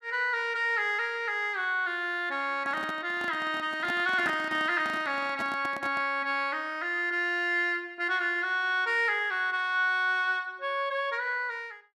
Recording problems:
microphone handling noise; from 2.5 to 6 s; peak -5 dB vs average level

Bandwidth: 13.5 kHz